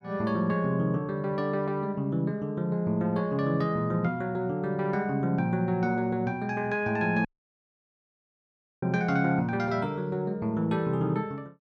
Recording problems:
audio cutting out; at 7.5 s for 1.5 s

